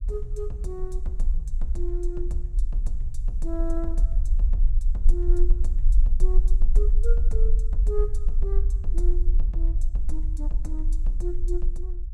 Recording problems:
rumble; below 42 Hz, strongest tone 20 Hz, SNR -10 dB

